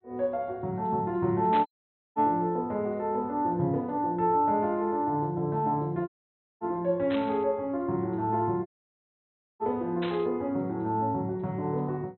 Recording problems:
low-pass filter; nothing above 4.1 kHz
static burst; at 1.5 s, at 7 s and at 10 s; peak -5 dB vs average level
audio cutting out; at 1.5 s, at 6 s for 0.5 s and at 8.5 s for 1 s

